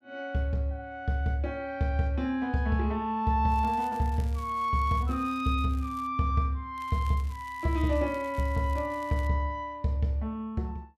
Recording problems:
crackle; from 3.5 to 6 s and from 7 to 9.5 s; loose cable, SNR 25 dB

